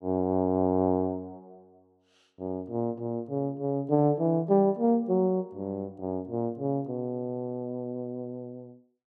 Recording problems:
none

